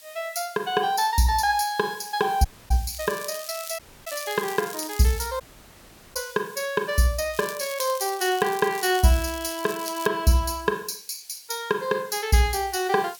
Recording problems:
hiss; SNR 21 dB
audio cutting out; at 2.5 s, at 4 s and at 5.5 s for 1 s
crackle; from 3 to 5.5 s and from 7.5 to 10 s; loose cable, SNR 13 dB

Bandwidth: 18.5 kHz